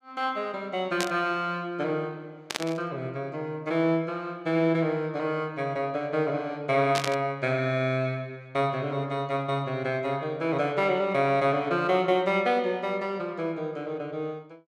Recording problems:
static burst; at 1 s, at 2.5 s and at 7 s; peak +3 dB vs average level

